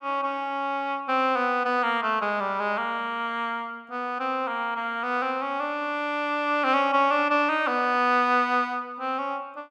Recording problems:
none

